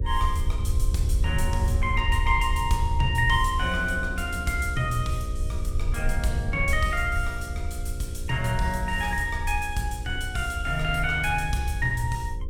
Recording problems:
hum; 60 Hz, harmonics up to 540 Hz, SNR 15 dB
low-frequency rumble; below 76 Hz, SNR 3 dB

